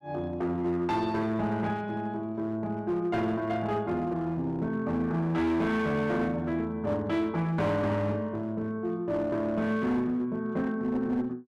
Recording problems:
distortion; hard clipping, uneven, signal-to-distortion ratio 11 dB

